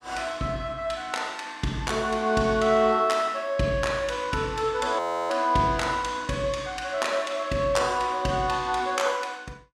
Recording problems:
audio freezing; at 5 s

